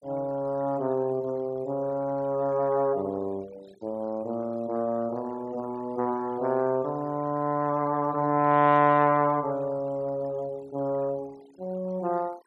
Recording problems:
noise reduction artefacts; signal-to-artefact ratio 26 dB

